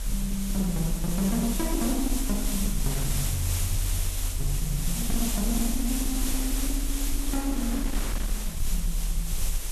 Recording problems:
distortion; hard clipping, signal-to-distortion ratio 12 dB
hum; 50 Hz, harmonics up to 350 Hz, SNR 23 dB
background hiss; slope 0 dB per octave, SNR 2 dB
low-frequency rumble; below 40 Hz, strongest tone 38 Hz, SNR 2 dB
wind noise; below 2.5 kHz, SNR 14 dB

